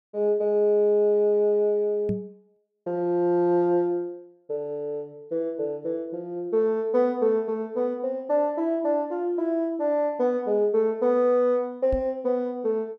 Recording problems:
microphone bump; at 2 s and at 12 s; peak -1 dB vs average level

